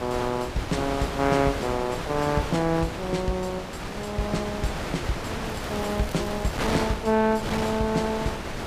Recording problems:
wind on the microphone; below 1.8 kHz, SNR 5 dB
crackling; from 5.5 to 6.5 s; loose cable, SNR 21 dB

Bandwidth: 15 kHz